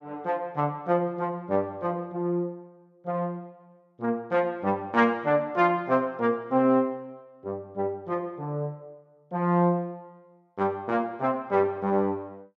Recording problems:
none

